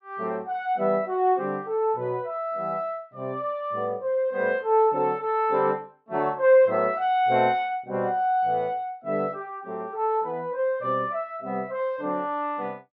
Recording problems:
none

